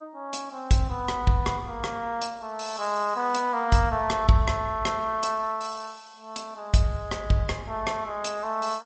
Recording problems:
lossy codec; MP3, then G.722, log-spectral distance 4 dB, nothing above 8.2 kHz

